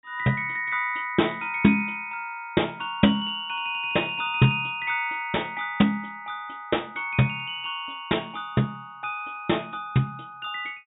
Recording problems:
treble missing; nothing above 4 kHz

